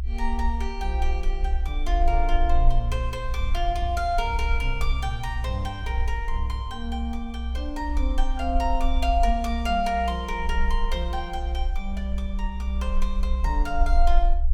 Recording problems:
low-frequency rumble; below 60 Hz, strongest tone 22 Hz, SNR -1 dB

